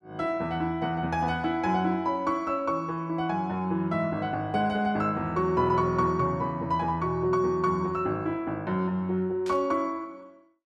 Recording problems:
static burst; at 9.5 s; peak -12 dB vs average level

